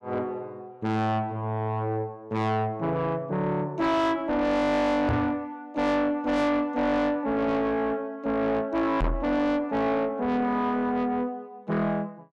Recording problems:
distortion; soft clipping, signal-to-distortion ratio 6 dB
microphone thump; at 5 s and at 9 s; peak +5 dB vs average level

